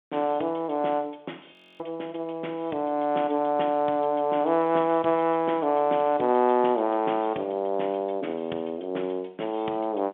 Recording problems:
telephone audio; 220 Hz to 3.6 kHz, G.711
audio freezing; at 1.5 s

